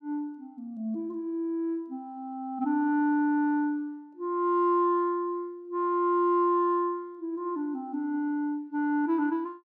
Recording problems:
none

